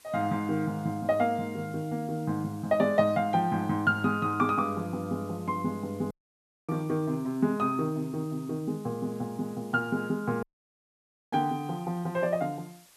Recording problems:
hiss; slope +1 dB per octave, SNR 26 dB
dropout; at 6 s for 0.5 s and at 10 s for 1 s

